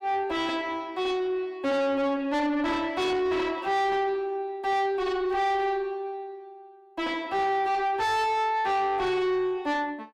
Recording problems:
distorted audio; soft clipping, signal-to-distortion ratio 6 dB

